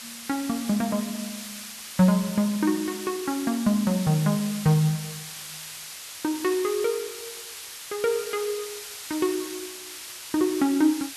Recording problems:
hiss; slope +3 dB per octave, SNR 11 dB

